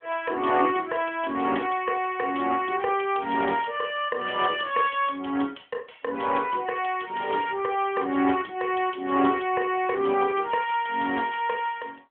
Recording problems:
phone line; 240 Hz to 3.3 kHz, AMR-NB

